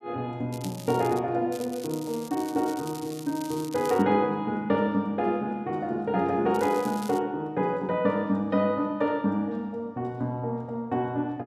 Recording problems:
crackling; at 0.5 s, from 1.5 to 4 s and at 6.5 s; loose cable, SNR 17 dB

